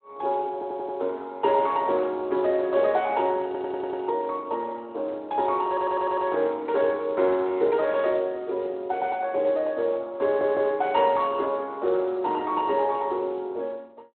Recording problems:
phone line; 280 Hz to 3.8 kHz, Speex
stutter; 4 times, first at 0.5 s

